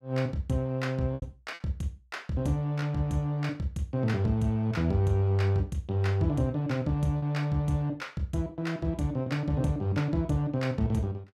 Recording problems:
lost packets; 2% of the sound replaced, filled with repeated pitch periods

